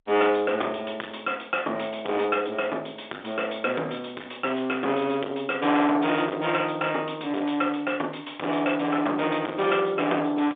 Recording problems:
telephone audio; 320 Hz to 3.6 kHz, G.711
distorted audio; soft clipping, signal-to-distortion ratio 9 dB

